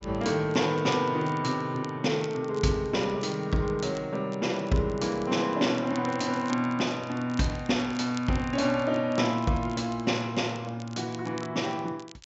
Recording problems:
treble cut off; nothing above 7.7 kHz
crackle; vinyl, SNR 22 dB

